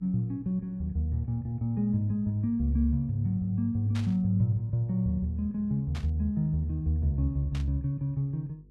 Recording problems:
electrical hum; 50 Hz, harmonics up to 500 Hz, SNR 27 dB
burst of static; at 4 s, at 6 s and at 7.5 s; peak -9 dB vs average level

